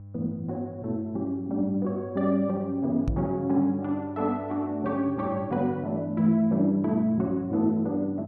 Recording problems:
hum; 50 Hz, harmonics up to 500 Hz, SNR 18 dB
microphone thump; at 3 s; peak +1 dB vs average level

